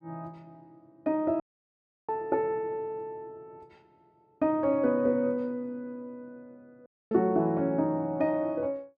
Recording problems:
dropout; at 1.5 s for 0.5 s and at 7 s

